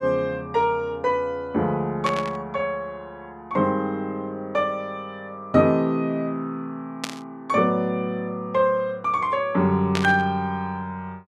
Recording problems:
static burst; at 2 s, at 7 s and at 10 s; peak +1 dB vs average level

